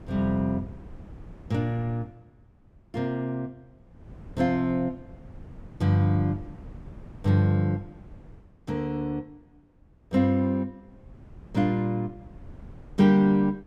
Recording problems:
wind noise; below 190 Hz, SNR 20 dB

